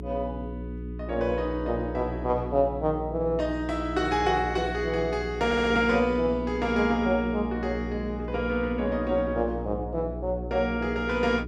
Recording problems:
hum; 60 Hz, harmonics up to 420 Hz, SNR 9 dB
audio stuttering; at 5.5 s

